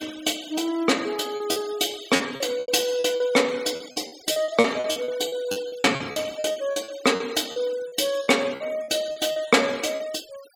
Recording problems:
denoising artefacts; signal-to-artefact ratio 18 dB
lost packets; 14% of the sound replaced, filled with repeated pitch periods

